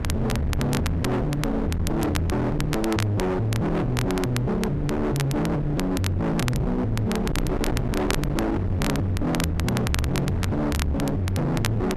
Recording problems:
distorted audio; hard clipping, signal-to-distortion ratio 6 dB
rumble; below 250 Hz, SNR 5 dB
crackling; vinyl, SNR 11 dB
microphone thump; at 2 s and at 6.5 s; peak +5 dB vs average level

